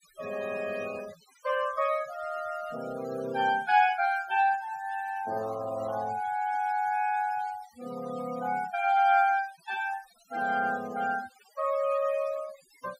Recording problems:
noise reduction artefacts; signal-to-artefact ratio 20 dB

